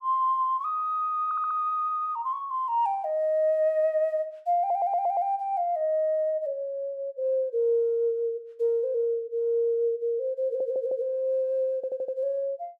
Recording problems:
audio stuttering; 4 times, first at 1.5 s

